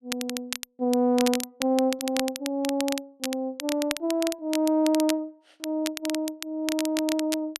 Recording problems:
crackling; vinyl, SNR 8 dB

